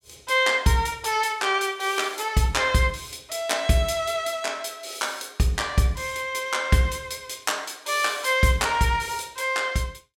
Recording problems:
none

